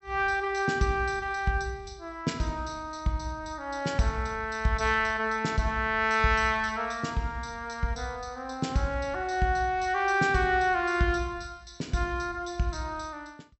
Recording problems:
low-pass filter; nothing above 7.8 kHz

